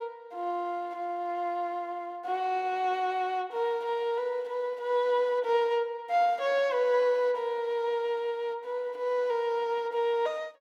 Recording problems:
none

